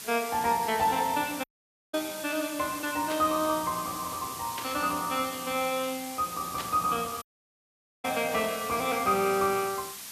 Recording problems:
background hiss; slope +1 dB per octave, SNR 10 dB
audio cutting out; at 1.5 s and at 7 s for 1 s
burst of static; at 3 s, at 4.5 s and at 6.5 s; peak -4 dB vs average level

